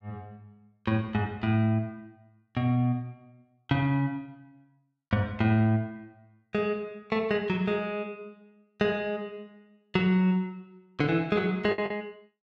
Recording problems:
packet loss; 1.2% of the sound replaced, filled with the last packet

